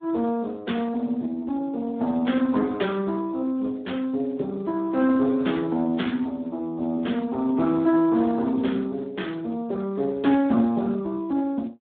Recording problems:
telephone audio; 170 Hz to 3.5 kHz, Speex

